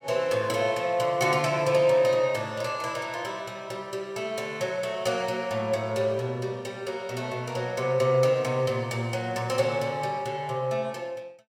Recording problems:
none

